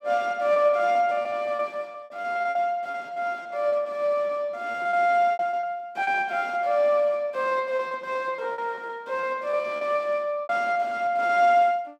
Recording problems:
packet loss; 15% of the sound replaced, filled with repeated pitch periods

